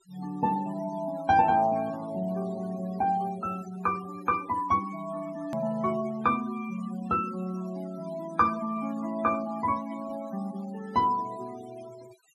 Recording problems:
noise reduction artefacts; signal-to-artefact ratio 18 dB
hard cut with a click; at 5.5 s

